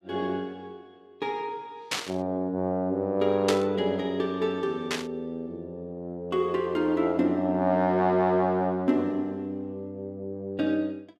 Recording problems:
burst of static; at 2 s, at 3.5 s and at 5 s; peak +4 dB vs average level

